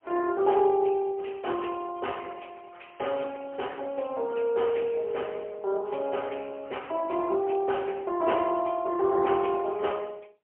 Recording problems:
telephone audio; 300 Hz to 3.2 kHz, AMR-NB, then MP3

